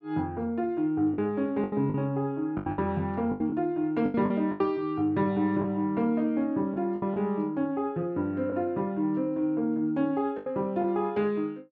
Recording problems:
lost packets; 7% of the sound replaced, filled with the last packet

